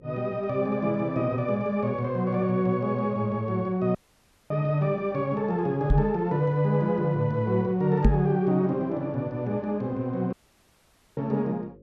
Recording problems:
electrical hum; 50 Hz, harmonics up to 550 Hz, SNR 27 dB
dropout; at 4 s for 0.5 s and at 10 s for 1 s
knock on the microphone; at 6 s and at 8 s; peak +8 dB vs average level

